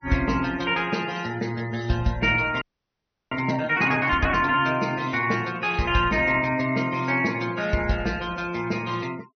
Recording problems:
low-pass filter; nothing above 6.1 kHz
denoising artefacts; signal-to-artefact ratio 21 dB
audio freezing; at 2.5 s for 0.5 s

